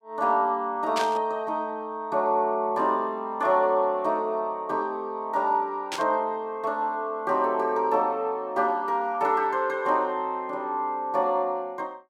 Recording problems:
static burst; at 1 s and at 6 s; peak -2 dB vs average level

